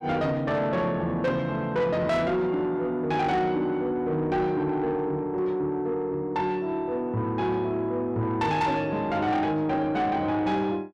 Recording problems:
distortion; soft clipping, signal-to-distortion ratio 11 dB

